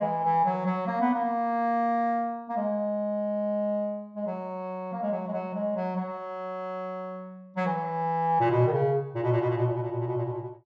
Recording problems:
none

